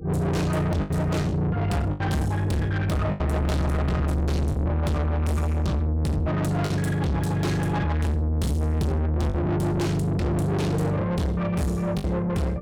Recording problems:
distortion; soft clipping, signal-to-distortion ratio 6 dB
electrical hum; 50 Hz, harmonics up to 500 Hz, SNR 18 dB
packet loss; 4% of the sound replaced, filled with the last packet

